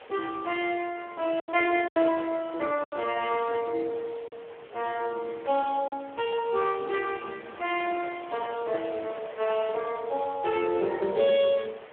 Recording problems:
phone line; 320 Hz to 3.7 kHz, Speex
hiss; SNR 19 dB
lost packets; 3% of the sound replaced, filled with silence

